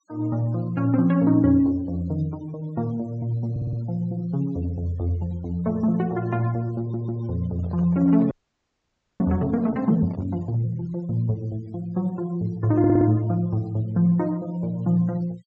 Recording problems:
low-pass filter; nothing above 8 kHz
denoising artefacts; signal-to-artefact ratio 28 dB
audio stuttering; at 3.5 s, at 7 s and at 13 s
microphone handling noise; from 7.5 to 11 s; peak -12 dB vs average level
audio freezing; at 8.5 s for 1 s

